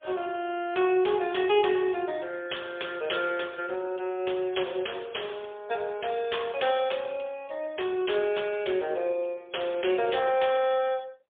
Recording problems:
telephone audio; 320 Hz to 3.5 kHz, AMR-NB, then MP3

